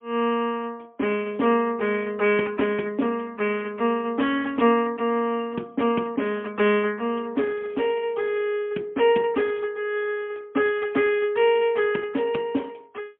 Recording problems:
telephone audio; 170 Hz to 3.3 kHz, AMR-NB, then MP3

